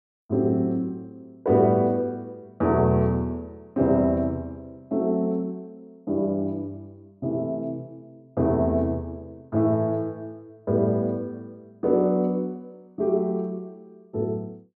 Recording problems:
none

